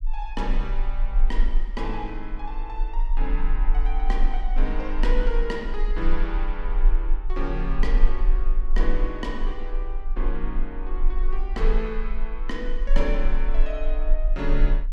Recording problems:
rumble; below 34 Hz, strongest tone 24 Hz, SNR -5 dB

